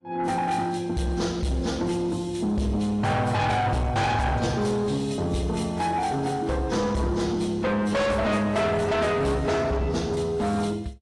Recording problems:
lossy compression; AAC, log-spectral distance 3 dB, nothing above 10.4 kHz
distorted audio; soft clipping, signal-to-distortion ratio 7 dB

